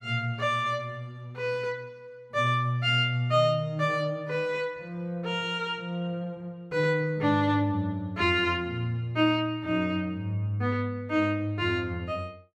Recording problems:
none

